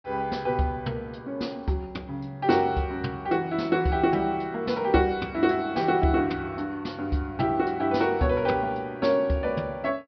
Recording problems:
low-pass filter; nothing above 5.5 kHz

